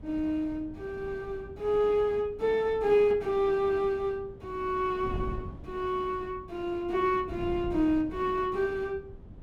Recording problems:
wind noise; below 200 Hz, SNR 16 dB

